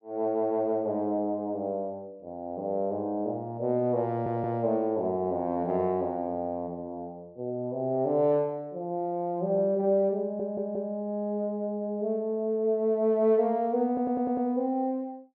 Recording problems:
stutter; at 4 s, at 10 s and at 14 s

